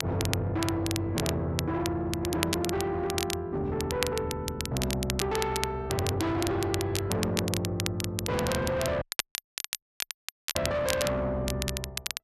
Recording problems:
distortion; soft clipping, signal-to-distortion ratio 8 dB
crackling; vinyl, SNR 5 dB
audio cutting out; at 9 s for 1.5 s

